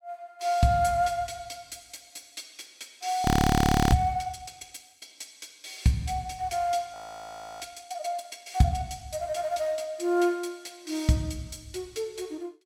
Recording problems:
audio freezing; at 3.5 s for 0.5 s and at 7 s for 0.5 s

